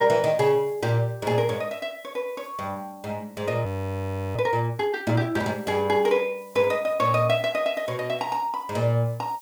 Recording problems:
background hiss; SNR 28 dB
audio freezing; at 3.5 s for 0.5 s

